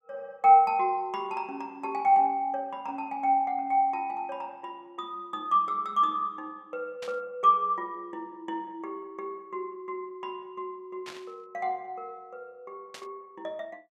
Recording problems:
burst of static; at 7 s, at 11 s and at 13 s; peak -10 dB vs average level

